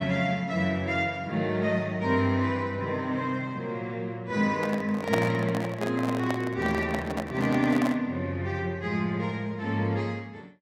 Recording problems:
handling noise; from 4.5 to 8 s; peak +5 dB vs average level

